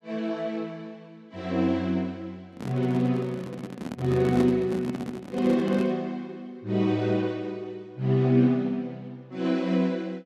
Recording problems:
handling noise; from 2.5 to 6 s; peak 0 dB vs average level

